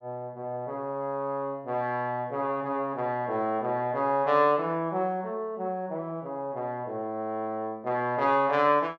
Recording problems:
none

